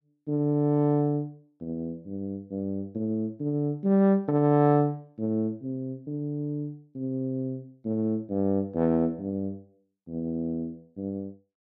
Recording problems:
none

